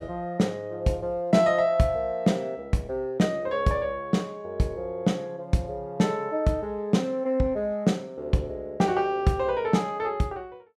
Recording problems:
none

